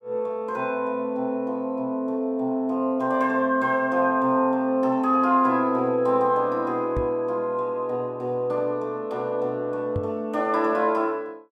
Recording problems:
microphone bump; at 7 s and at 10 s; peak -1 dB vs average level

